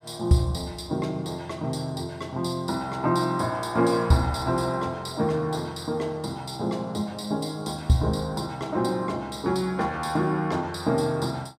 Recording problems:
none

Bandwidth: 15.5 kHz